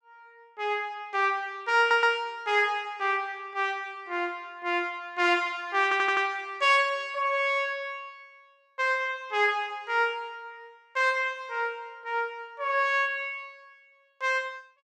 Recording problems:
audio stuttering; at 2 s and at 6 s

